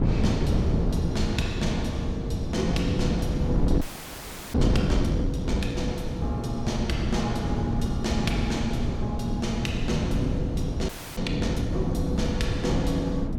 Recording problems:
wind on the microphone; below 230 Hz, SNR -2 dB
frozen audio; at 4 s for 0.5 s and at 11 s

